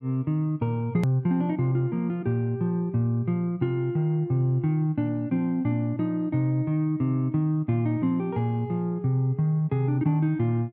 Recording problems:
hard cut with a click; at 1 s

